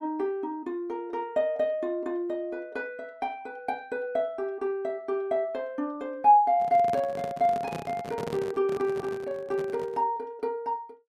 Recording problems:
microphone handling noise; from 6.5 to 10 s; peak -3 dB vs average level

